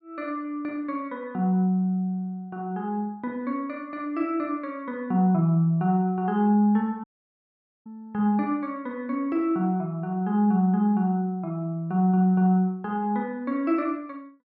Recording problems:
dropout; at 7 s for 1 s

